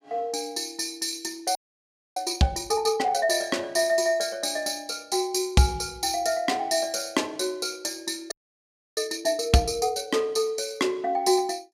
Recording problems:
audio freezing; at 1.5 s for 0.5 s and at 8.5 s for 0.5 s

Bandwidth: 15.5 kHz